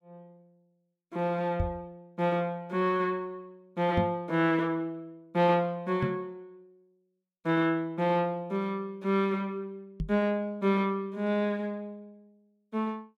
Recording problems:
microphone thump; 4 times, first at 1.5 s; peak +3 dB vs average level

